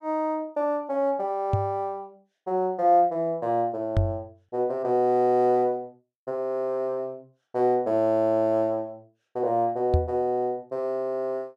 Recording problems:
microphone bump; at 1.5 s, at 4 s and at 10 s; peak +6 dB vs average level

